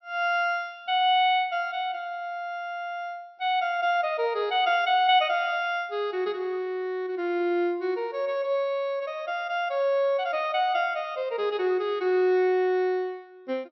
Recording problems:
treble missing; nothing above 5.9 kHz

